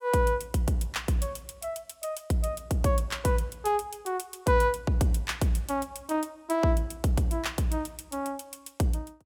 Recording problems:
none

